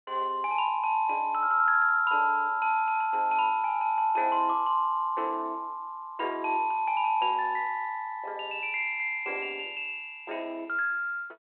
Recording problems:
telephone audio; 320 Hz to 3.3 kHz, G.726

